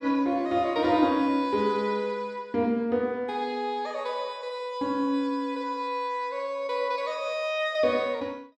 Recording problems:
none

